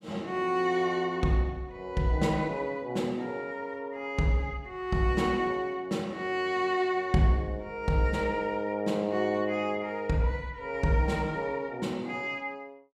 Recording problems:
none

